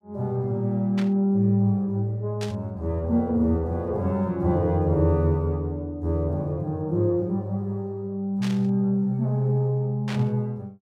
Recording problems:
static burst; 4 times, first at 1 s; peak -7 dB vs average level

